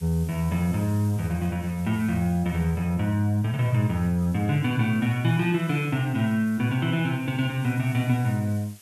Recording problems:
hiss; slope +2 dB per octave, SNR 24 dB

